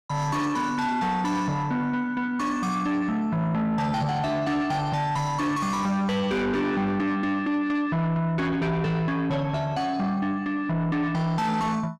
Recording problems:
distorted audio; soft clipping, signal-to-distortion ratio 8 dB

